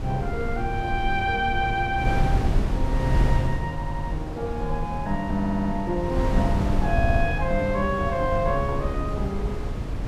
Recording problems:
wind noise; below 120 Hz, SNR 2 dB
audio stuttering; at 4 s, at 5.5 s and at 7 s

